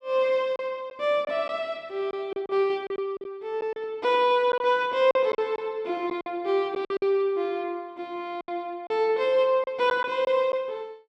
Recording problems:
lost packets; 7% of the sound replaced, filled with silence

